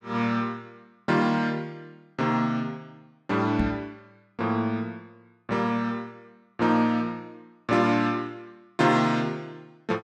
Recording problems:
knock on the microphone; at 3.5 s; peak +1 dB vs average level

